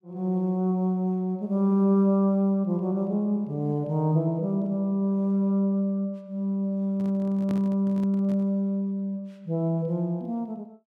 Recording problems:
handling noise; from 7 to 8.5 s; peak -7 dB vs average level

